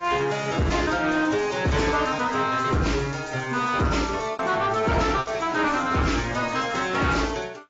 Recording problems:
lossy codec; AAC, then AAC, log-spectral distance 6 dB, nothing above 7.3 kHz
distorted audio; soft clipping, signal-to-distortion ratio 8 dB
packet loss; 3% of the sound replaced, filled with repeated pitch periods

